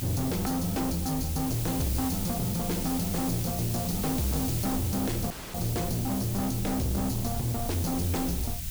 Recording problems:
distorted audio; hard clipping, uneven, signal-to-distortion ratio 8 dB
hiss; slope +3 dB per octave, SNR 5 dB
low-frequency rumble; below 110 Hz, SNR 9 dB
dropout; at 5.5 s

